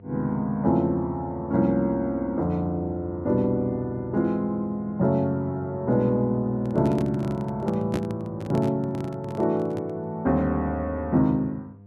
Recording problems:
hum; 50 Hz, harmonics up to 700 Hz, SNR 22 dB
microphone handling noise; from 6.5 to 10 s; peak 0 dB vs average level

